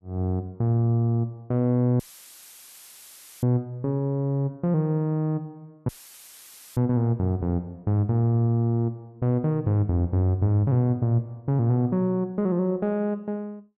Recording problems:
audio cutting out; at 2 s for 1.5 s and at 6 s for 1 s; filled with static

